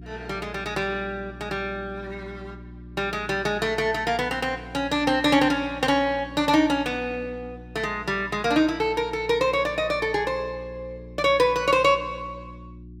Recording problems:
hum; 60 Hz, harmonics up to 360 Hz, SNR 18 dB

